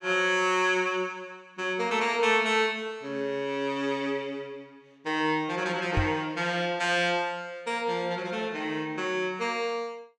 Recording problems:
microphone thump; at 6 s; peak +3 dB vs average level

